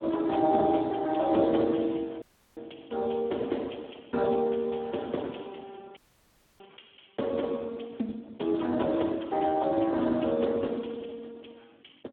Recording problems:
phone line; 190 Hz to 3.4 kHz, Speex
dropout; at 2 s and at 6 s for 0.5 s

